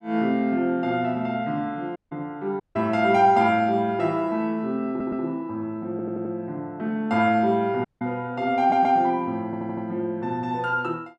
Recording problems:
audio cutting out; at 2 s, at 2.5 s and at 8 s
audio stuttering; 4 times, first at 5 s

